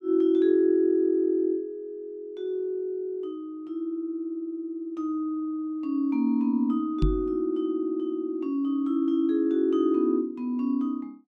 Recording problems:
microphone thump; at 7 s; peak +4 dB vs average level

